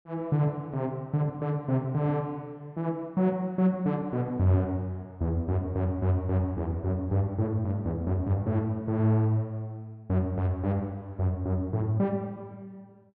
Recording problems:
none

